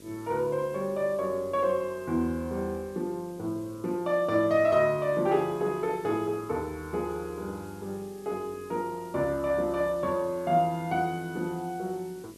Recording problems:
hum; 50 Hz, harmonics up to 950 Hz, SNR 24 dB
background hiss; slope +3 dB per octave, SNR 25 dB

